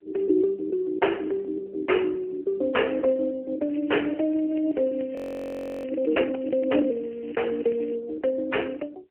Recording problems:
telephone audio; 280 Hz to 3 kHz, AMR-NB
crackling; from 3.5 to 6 s and from 6.5 to 8 s; loose cable, SNR 24 dB
frozen audio; at 5 s for 0.5 s

